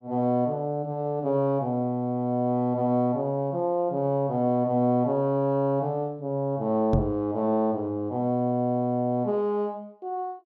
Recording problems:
knock on the microphone; at 7 s; peak +7 dB vs average level

